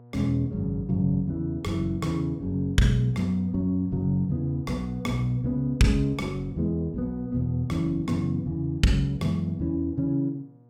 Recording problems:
hum; 60 Hz, harmonics up to 960 Hz, SNR 23 dB

